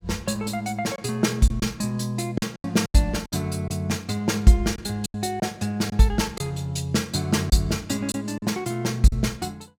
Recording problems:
lost packets; 6% of the sound replaced, filled with silence

